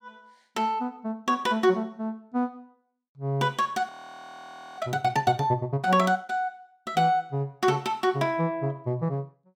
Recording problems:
audio freezing; at 4 s for 1 s

